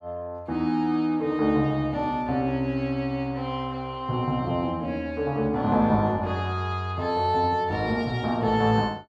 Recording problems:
none

